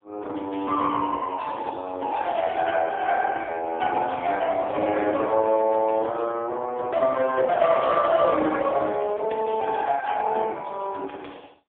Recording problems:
phone line; 260 Hz to 3.4 kHz, AMR-NB, then MP3

